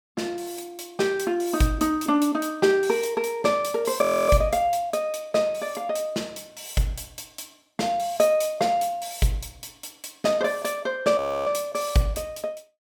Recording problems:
audio freezing; at 4 s and at 11 s

